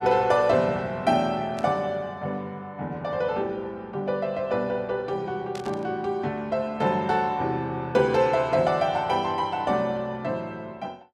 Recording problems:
static burst; at 1.5 s and at 5.5 s; peak -11 dB vs average level

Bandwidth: 12.5 kHz